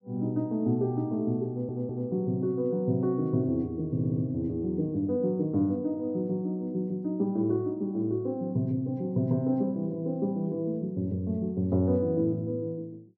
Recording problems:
audio stuttering; at 1.5 s and at 4 s

